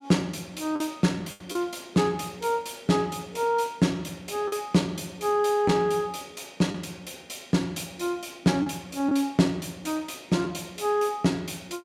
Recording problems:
lost packets; 2% of the sound replaced, filled with the last packet

